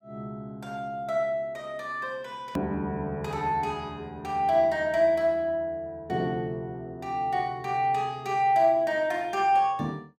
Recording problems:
edit click; at 2.5 s

